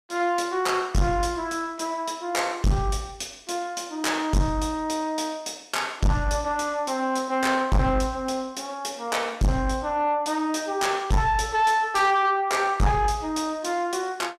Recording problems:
distorted audio; soft clipping, signal-to-distortion ratio 6 dB

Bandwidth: 14.5 kHz